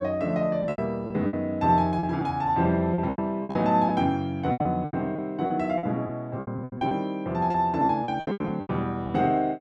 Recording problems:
packet loss; 15% of the sound replaced, filled with repeated pitch periods

